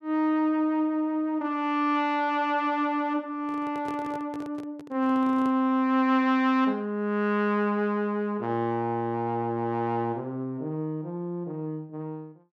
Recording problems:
microphone handling noise; from 3.5 to 5.5 s; peak -9 dB vs average level

